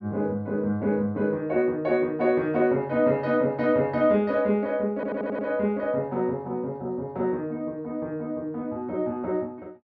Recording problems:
stutter; at 5 s

